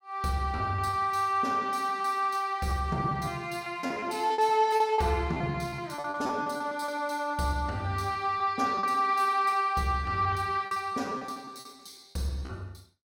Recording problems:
lost packets; 12% of the sound replaced, filled with repeated pitch periods

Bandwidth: 16.5 kHz